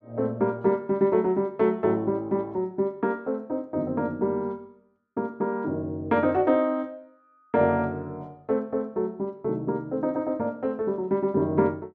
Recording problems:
none

